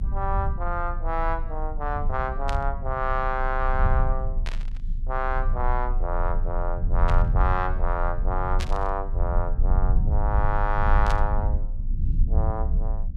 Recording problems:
low-frequency rumble; below 58 Hz, strongest tone 26 Hz, SNR -2 dB
burst of static; 5 times, first at 2.5 s; peak 0 dB vs average level

